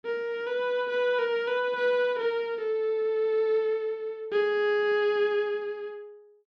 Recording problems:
none

